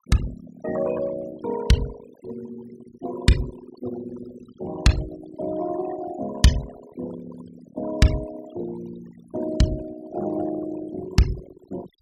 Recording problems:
denoising artefacts; signal-to-artefact ratio 13 dB

